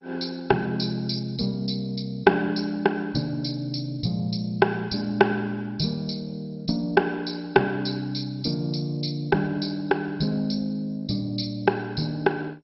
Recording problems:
codec artefacts; MP2, log-spectral distance 5 dB, nothing above 5.5 kHz

